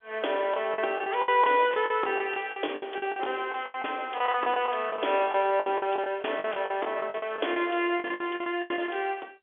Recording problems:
telephone audio; 300 Hz to 3.5 kHz, G.711
packet loss; 17% of the sound replaced, filled with the last packet

